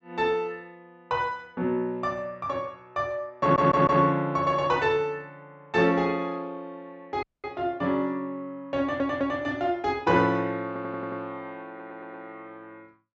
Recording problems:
treble missing; nothing above 8 kHz
stutter; 4 times, first at 3.5 s
dropout; at 7 s

